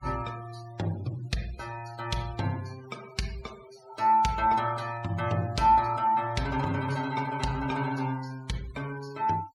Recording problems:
noise reduction artefacts; signal-to-artefact ratio 21 dB

